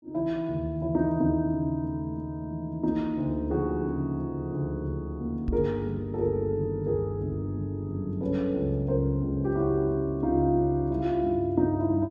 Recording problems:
microphone thump; at 5.5 s; peak +1 dB vs average level

